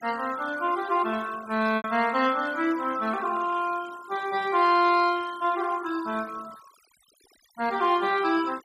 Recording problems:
noise reduction artefacts; signal-to-artefact ratio 19 dB
lost packets; 1.8% of the sound replaced, filled with repeated pitch periods

